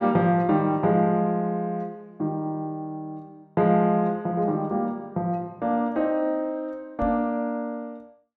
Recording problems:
microphone bump; at 7 s; peak -3 dB vs average level

